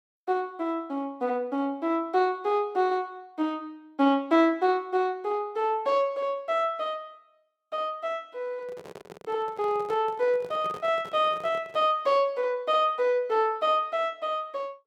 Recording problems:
handling noise; from 8.5 to 12 s; peak -11 dB vs average level

